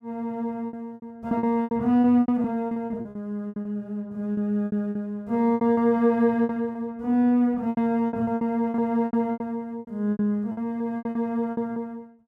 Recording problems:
packet loss; 17% of the sound replaced, filled with repeated pitch periods

